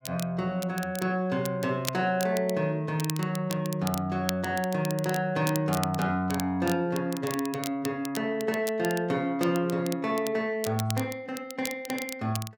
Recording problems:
crackling; vinyl, SNR 11 dB

